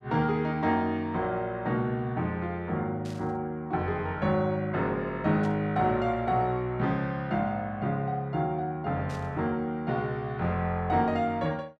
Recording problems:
static burst; at 3 s, at 5.5 s and at 9 s; peak -15 dB vs average level

